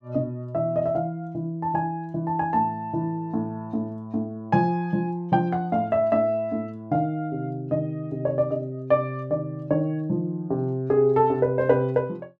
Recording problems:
none

